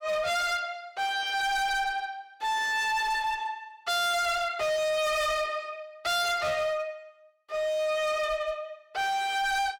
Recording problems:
distorted audio; hard clipping, signal-to-distortion ratio 7 dB

